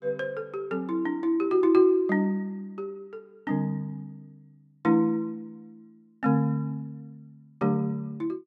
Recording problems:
none

